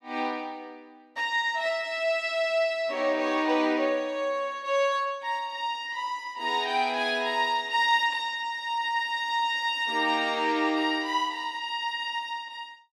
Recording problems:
none

